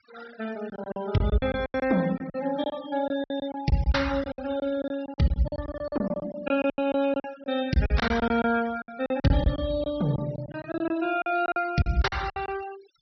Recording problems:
low-pass filter; nothing above 5.8 kHz
denoising artefacts; signal-to-artefact ratio 18 dB
lost packets; 17% of the sound replaced, filled with silence

